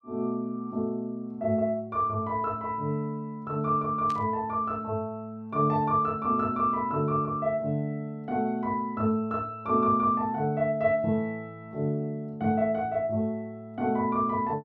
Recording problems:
static burst; at 4 s; peak -11 dB vs average level

